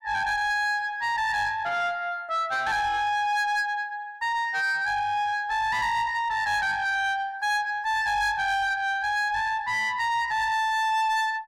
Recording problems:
distortion; soft clipping, signal-to-distortion ratio 10 dB

